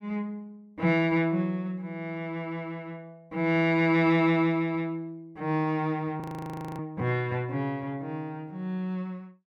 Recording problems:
frozen audio; at 6 s for 0.5 s

